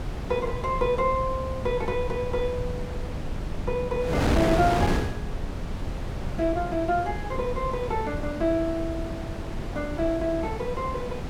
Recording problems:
low-frequency rumble; below 110 Hz, SNR 9 dB
wind noise; below 750 Hz, SNR 5 dB

